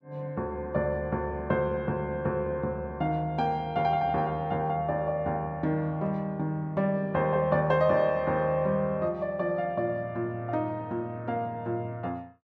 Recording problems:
none

